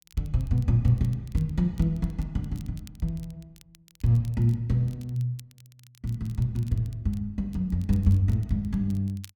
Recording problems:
crackle; vinyl, SNR 29 dB

